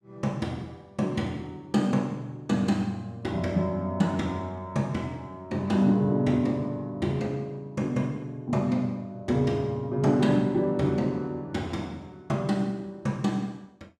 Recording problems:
none

